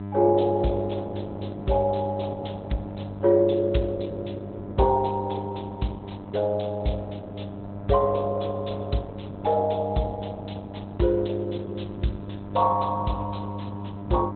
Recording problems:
codec artefacts; Opus, log-spectral distance 5 dB, nothing above 4 kHz
hum; 50 Hz, harmonics up to 1.3 kHz, SNR 11 dB

